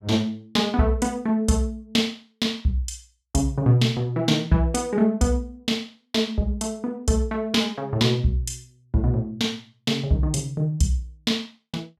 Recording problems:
none

